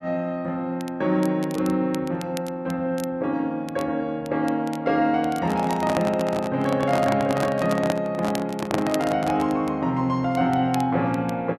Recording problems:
crackling; vinyl, SNR 20 dB
handling noise; from 5.5 to 9.5 s; peak +3 dB vs average level

